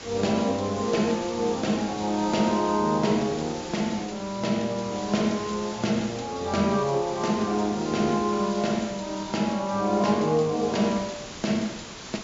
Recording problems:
low-pass filter; nothing above 7.4 kHz
hiss; slope -2 dB per octave, SNR 13 dB

